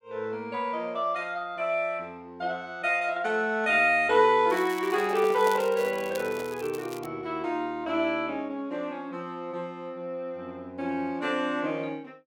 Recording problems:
crackling; from 4.5 to 7 s; loose cable, SNR 18 dB
microphone handling noise; from 5 to 6.5 s; peak -7 dB vs average level

